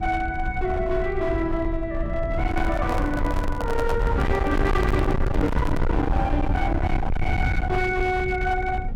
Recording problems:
distortion; hard clipping, signal-to-distortion ratio 6 dB
rumble; below 130 Hz, SNR 2 dB
microphone handling noise; from 2.5 to 6 s; peak 0 dB vs average level

